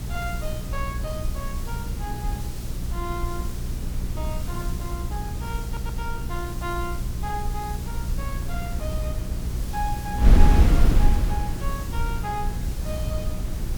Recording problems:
electrical hum; 60 Hz, harmonics up to 420 Hz, SNR 0 dB
background hiss; SNR 7 dB
wind noise; below 72 Hz, SNR -7 dB
audio stuttering; at 5.5 s

